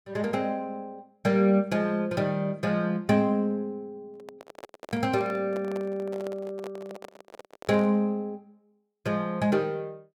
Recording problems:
handling noise; from 4 to 8 s; peak -10 dB vs average level

